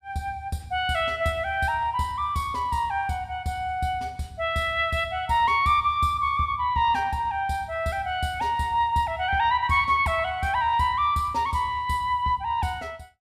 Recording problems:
none

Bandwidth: 15 kHz